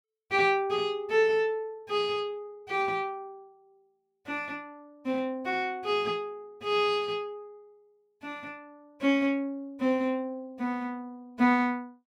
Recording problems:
none

